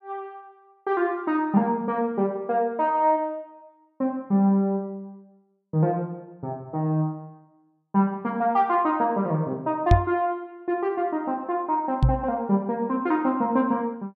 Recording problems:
microphone bump; at 10 s and at 12 s; peak +9 dB vs average level

